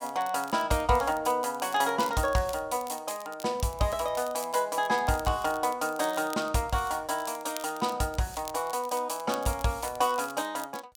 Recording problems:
crackling; vinyl, SNR 18 dB

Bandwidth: 17 kHz